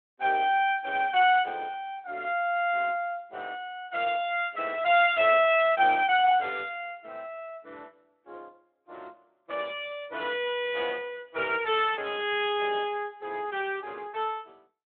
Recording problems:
phone line; 240 Hz to 3.7 kHz, Speex

